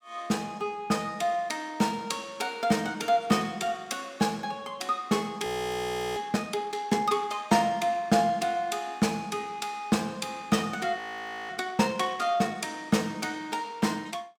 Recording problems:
audio freezing; at 5.5 s for 0.5 s and at 11 s for 0.5 s

